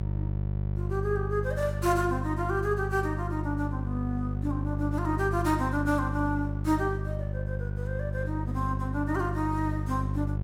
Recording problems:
hum; 50 Hz, harmonics up to 600 Hz, SNR 1 dB

